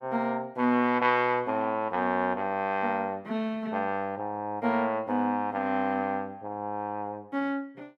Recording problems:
none

